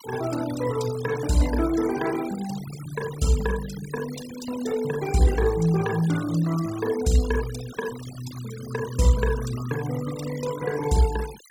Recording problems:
noise reduction artefacts; signal-to-artefact ratio 14 dB

